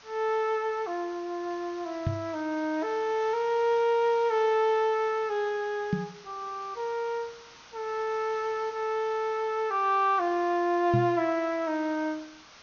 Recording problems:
treble cut off; nothing above 6.5 kHz
hiss; SNR 21 dB
knock on the microphone; at 2 s, at 6 s and at 11 s; peak +4 dB vs average level

